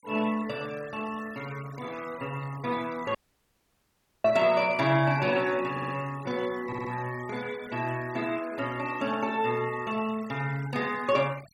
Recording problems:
noise reduction artefacts; signal-to-artefact ratio 19 dB
dropout; at 3 s for 1 s
audio stuttering; at 5.5 s and at 6.5 s

